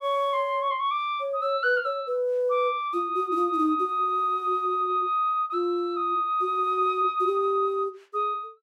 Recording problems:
none

